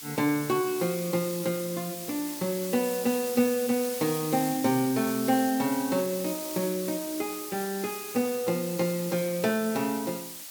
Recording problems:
hiss; slope +2 dB per octave, SNR 8 dB

